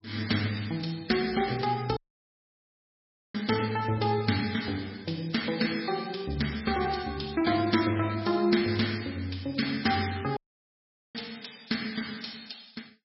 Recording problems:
lossy codec; MP3, log-spectral distance 9 dB, nothing above 5.3 kHz
audio cutting out; at 2 s for 1.5 s and at 10 s for 1 s

